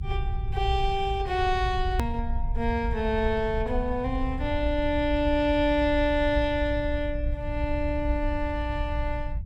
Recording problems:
rumble; below 74 Hz, SNR 5 dB
hard cut with a click; at 2 s

